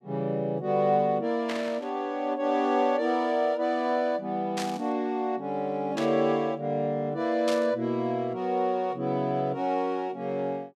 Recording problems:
burst of static; 4 times, first at 1.5 s; peak -3 dB vs average level

